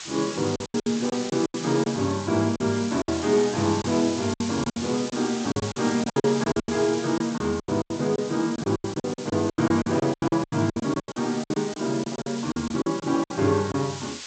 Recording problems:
lossy codec; G.722, log-spectral distance 13 dB
background hiss; slope +3 dB per octave, SNR 12 dB
packet loss; 17% of the sound replaced, filled with silence

